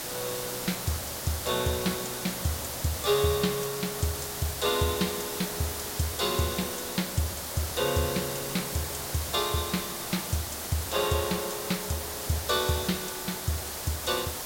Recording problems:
background hiss; slope -2 dB per octave, SNR 3 dB

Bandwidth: 16.5 kHz